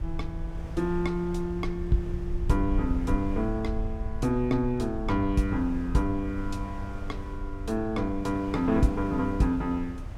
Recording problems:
low-frequency rumble; below 68 Hz, SNR 8 dB
wind noise; below 900 Hz, SNR 18 dB

